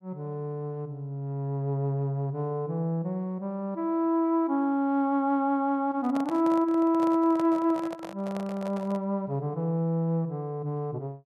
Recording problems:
microphone handling noise; from 6 to 9 s; peak -6 dB vs average level

